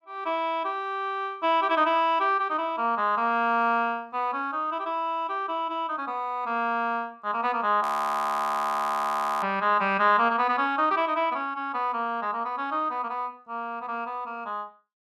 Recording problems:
frozen audio; at 8 s for 1.5 s

